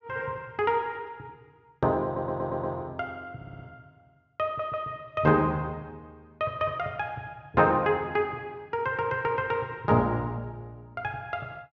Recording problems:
treble cut off; nothing above 8 kHz
audio stuttering; at 2 s, at 3.5 s and at 4.5 s

